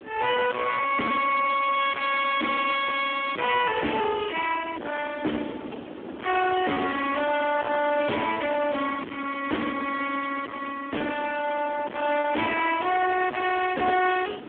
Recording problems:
phone line; 260 Hz to 2.6 kHz, Speex
distortion; soft clipping, signal-to-distortion ratio 5 dB
background hiss; SNR 25 dB
wind noise; below 750 Hz, SNR 16 dB
packet loss; 0.9% of the sound replaced, filled with repeated pitch periods

